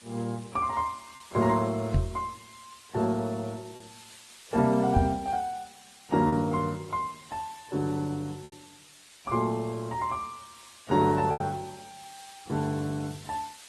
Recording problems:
lossy compression; AAC, then Opus, log-spectral distance 12 dB
background hiss; slope +1 dB per octave, SNR 22 dB
packet loss; 3% of the sound replaced, filled with repeated pitch periods
microphone bump; at 2 s and at 5 s; peak +7 dB vs average level

